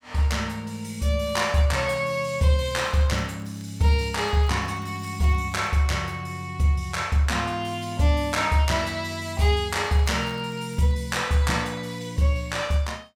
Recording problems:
crackling; from 3 to 5.5 s and from 10 to 11 s; loose cable, SNR 30 dB

